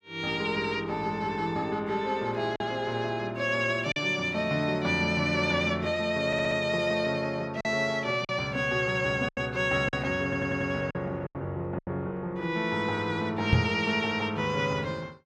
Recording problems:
lost packets; 3% of the sound replaced, filled with silence
audio stuttering; at 6.5 s and at 10 s
microphone bump; at 14 s; peak +9 dB vs average level

